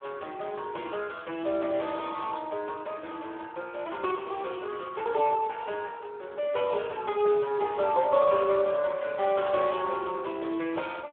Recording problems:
phone line; 220 Hz to 3.7 kHz, Speex

